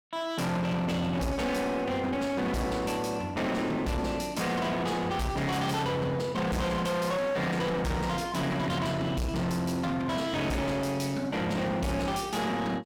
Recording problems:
distortion; hard clipping, uneven, signal-to-distortion ratio 7 dB

